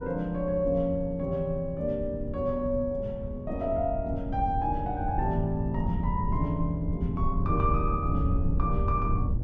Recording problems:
rumble; below 110 Hz, SNR 3 dB

